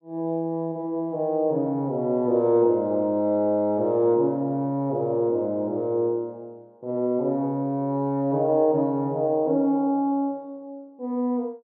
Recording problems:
none

